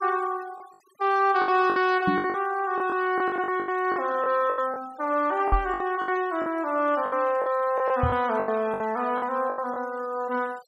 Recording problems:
denoising artefacts; signal-to-artefact ratio 23 dB
packet loss; 12% of the sound replaced, filled with the last packet
knock on the microphone; at 2 s, at 5.5 s and at 8 s; peak +3 dB vs average level

